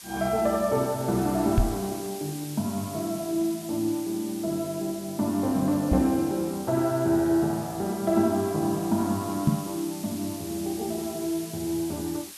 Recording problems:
background hiss; slope +2 dB per octave, SNR 14 dB
microphone bump; at 1.5 s, at 6 s and at 9.5 s; peak +9 dB vs average level

